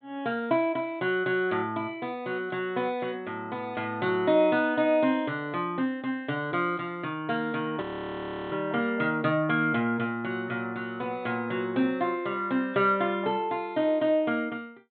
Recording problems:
treble cut off; nothing above 4 kHz
audio freezing; at 8 s for 0.5 s

